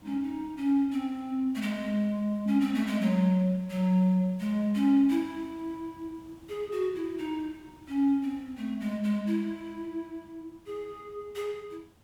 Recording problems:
background hiss; slope -5 dB per octave, SNR 28 dB

